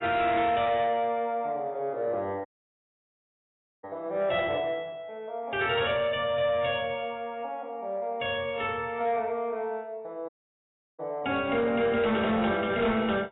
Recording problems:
lossy codec; AAC, log-spectral distance 3 dB, nothing above 3.4 kHz
distortion; soft clipping, signal-to-distortion ratio 12 dB
dropout; at 2.5 s for 1.5 s and at 10 s for 0.5 s

